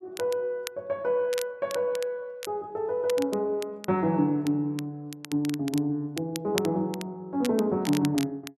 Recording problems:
crackling; vinyl, SNR 13 dB

